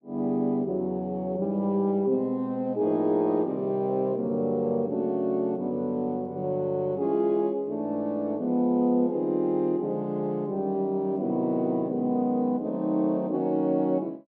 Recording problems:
none

